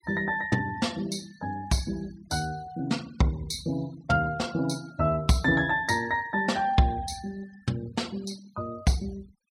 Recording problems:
denoising artefacts; signal-to-artefact ratio 22 dB

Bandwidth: 16 kHz